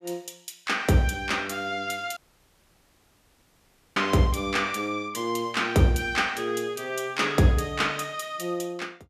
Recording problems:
audio cutting out; at 2 s for 2 s

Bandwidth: 14.5 kHz